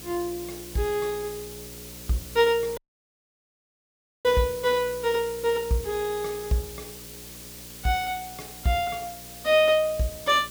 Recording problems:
hum; 60 Hz, harmonics up to 600 Hz, SNR 21 dB
hiss; slope +1 dB per octave, SNR 14 dB
audio cutting out; at 3 s for 1.5 s

